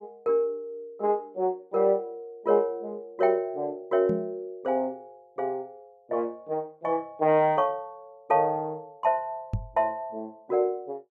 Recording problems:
microphone thump; at 4 s and at 9.5 s; peak +2 dB vs average level

